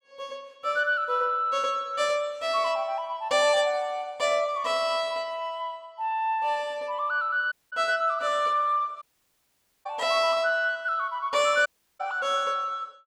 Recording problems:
audio cutting out; at 7.5 s, at 9 s for 1 s and at 12 s

